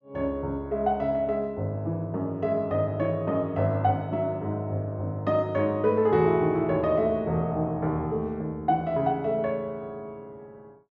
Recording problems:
none

